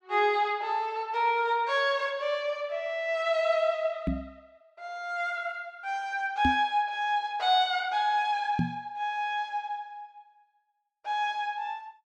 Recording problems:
microphone bump; at 4 s, at 6.5 s and at 8.5 s; peak +4 dB vs average level

